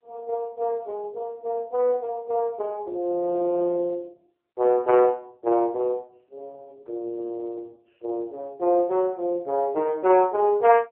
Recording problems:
telephone audio; 280 Hz to 3 kHz, AMR-NB

